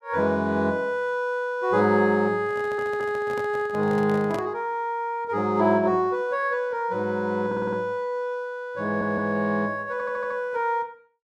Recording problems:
handling noise; from 2.5 to 4.5 s; peak -4 dB vs average level
audio stuttering; 4 times, first at 2.5 s

